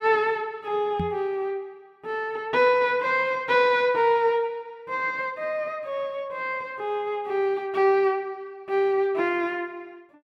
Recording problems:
microphone bump; at 1 s; peak -1 dB vs average level

